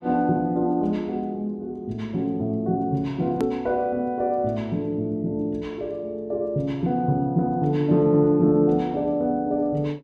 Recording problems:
click at an edit; at 3.5 s

